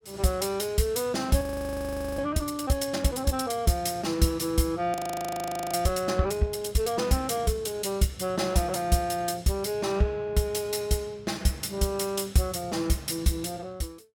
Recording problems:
frozen audio; at 1.5 s for 1 s and at 5 s for 1 s

